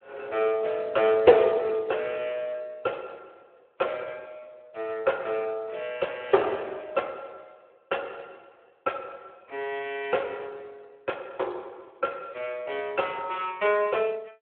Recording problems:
phone line; 320 Hz to 3.5 kHz, Speex

